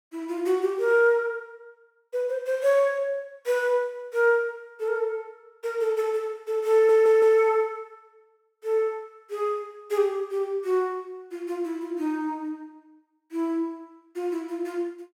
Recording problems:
audio stuttering; at 6.5 s

